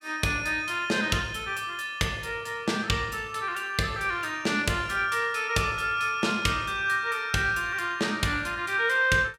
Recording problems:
none

